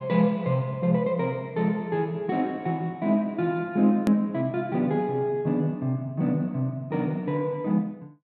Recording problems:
hard cut with a click; at 4 s

